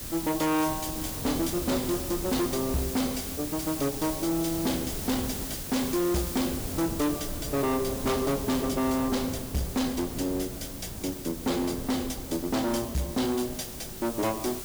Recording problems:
distorted audio; hard clipping, uneven, signal-to-distortion ratio 7 dB
hiss; slope +2 dB per octave, SNR 7 dB
wind noise; below 370 Hz, SNR 11 dB

